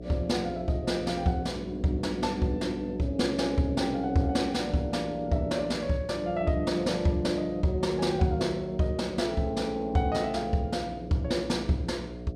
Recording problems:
mains hum; 60 Hz, harmonics up to 720 Hz, SNR 13 dB

